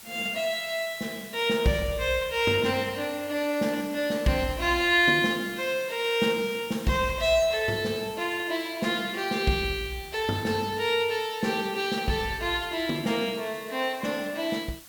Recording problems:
background hiss; slope 0 dB per octave, SNR 18 dB

